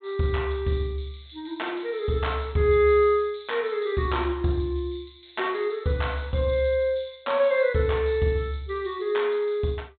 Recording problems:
treble missing; nothing above 4 kHz

